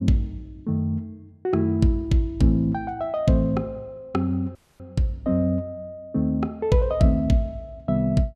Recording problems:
dropout; at 4.5 s

